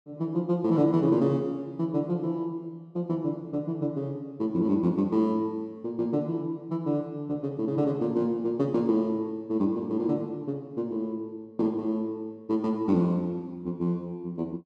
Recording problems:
none

